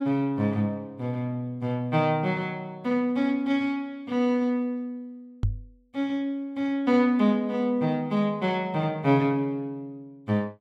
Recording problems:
knock on the microphone; at 5.5 s; peak +3 dB vs average level

